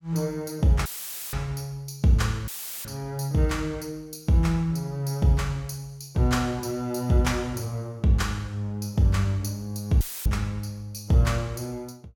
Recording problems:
audio cutting out; at 1 s, at 2.5 s and at 10 s; filled with static

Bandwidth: 17.5 kHz